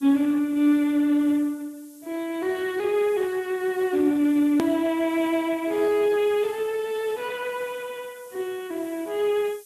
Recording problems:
lossy codec; Speex, log-spectral distance 2 dB, nothing above 13.1 kHz
hiss; SNR 25 dB
click at an edit; at 4.5 s

